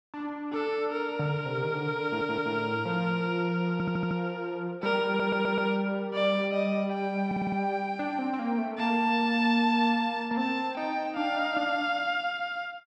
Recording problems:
stutter; 4 times, first at 2 s

